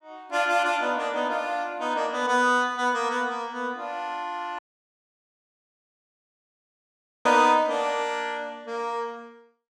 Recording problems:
dropout; at 4.5 s for 2.5 s

